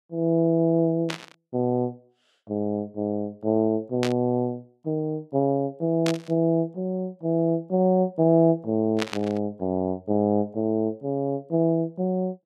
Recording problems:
static burst; 4 times, first at 1 s; peak 0 dB vs average level

